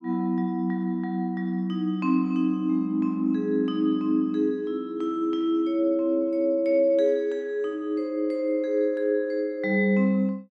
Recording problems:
none

